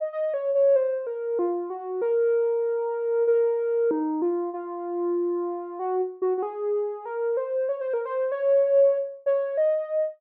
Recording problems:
none

